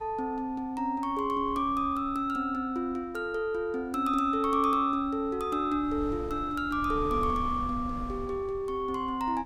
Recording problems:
wind noise; below 120 Hz, SNR 15 dB

